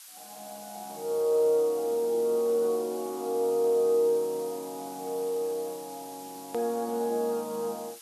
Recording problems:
background hiss; SNR 17 dB
click at an edit; at 6.5 s

